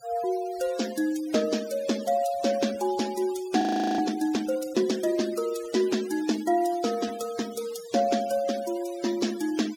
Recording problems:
noise reduction artefacts; signal-to-artefact ratio 15 dB
frozen audio; at 3.5 s

